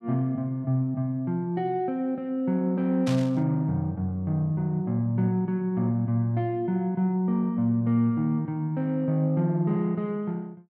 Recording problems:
burst of static; at 3 s; peak -6 dB vs average level

